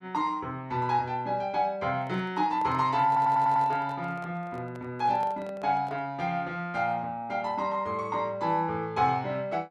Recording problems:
handling noise; from 2 to 6 s; peak -11 dB vs average level
stutter; at 3 s

